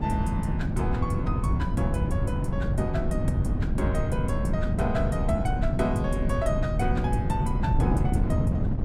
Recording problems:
wind on the microphone; below 170 Hz, SNR -4 dB

